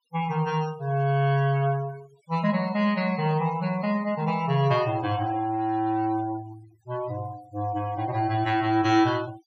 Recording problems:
denoising artefacts; signal-to-artefact ratio 20 dB

